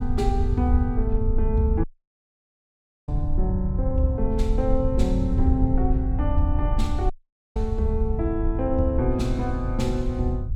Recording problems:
low-frequency rumble; below 80 Hz, SNR 0 dB
dropout; at 2 s for 1 s and at 7 s

